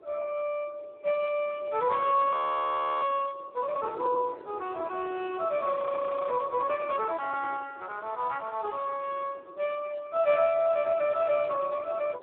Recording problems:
phone line; 300 Hz to 3.9 kHz, Speex
wind on the microphone; below 590 Hz, SNR 19 dB
frozen audio; at 2.5 s for 0.5 s and at 5.5 s for 0.5 s

